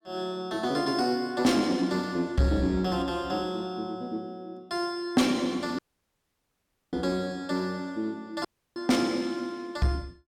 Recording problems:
distortion; soft clipping, signal-to-distortion ratio 11 dB
audio cutting out; at 6 s for 1 s and at 8.5 s

